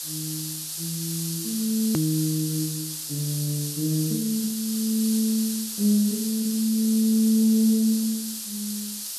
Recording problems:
hiss; SNR 6 dB
click at an edit; at 2 s

